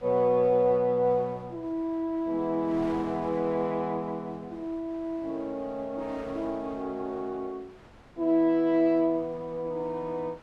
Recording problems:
wind on the microphone; below 1.3 kHz, SNR 22 dB

